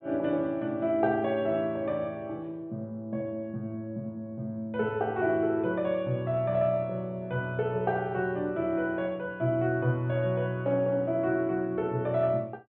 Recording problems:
treble missing; nothing above 4 kHz

